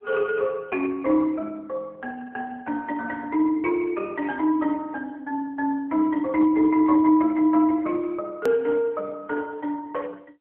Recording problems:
telephone audio; 240 Hz to 3.2 kHz, AMR-NB
hard cut with a click; at 8.5 s

